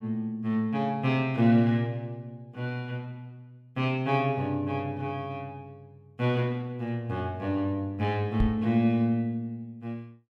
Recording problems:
microphone bump; at 8.5 s; peak +5 dB vs average level

